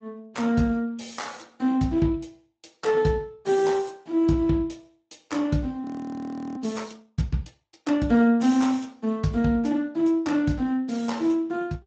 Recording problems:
lossy compression; Speex, log-spectral distance 3 dB, nothing above 7.8 kHz
audio freezing; at 6 s for 0.5 s

